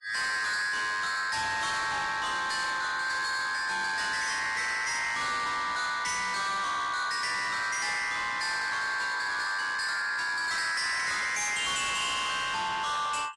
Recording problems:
codec artefacts; Vorbis, log-spectral distance 5 dB, nothing above 10.4 kHz
distortion; soft clipping, signal-to-distortion ratio 7 dB

